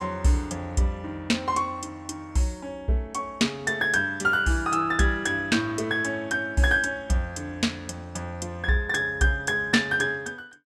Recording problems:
none

